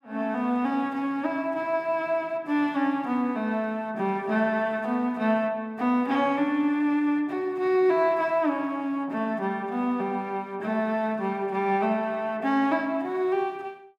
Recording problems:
none

